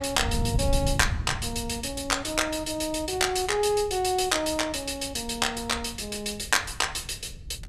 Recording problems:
wind noise; below 120 Hz, SNR 10 dB

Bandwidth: 15 kHz